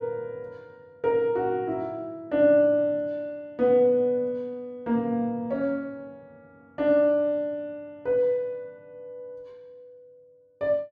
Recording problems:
none

